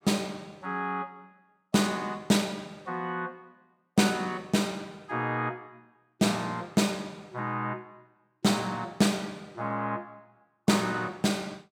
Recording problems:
none

